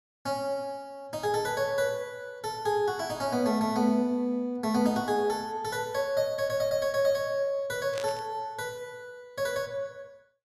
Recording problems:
static burst; at 8 s; peak -6 dB vs average level

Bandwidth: 15.5 kHz